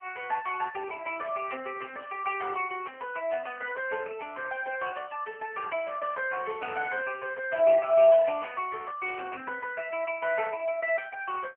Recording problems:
phone line; 280 Hz to 2.9 kHz, AMR-NB

